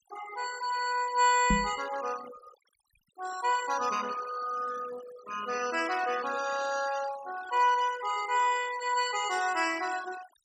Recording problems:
noise reduction artefacts; signal-to-artefact ratio 14 dB
microphone bump; at 1.5 s; peak +4 dB vs average level

